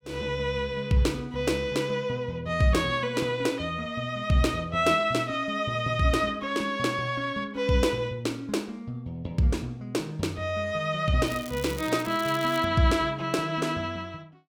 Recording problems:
crackling; from 11 to 13 s; loose cable, SNR 15 dB

